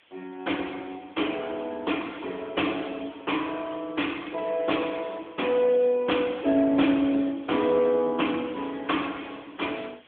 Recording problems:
phone line; 220 Hz to 3.4 kHz, AMR-NB
hiss; SNR 29 dB

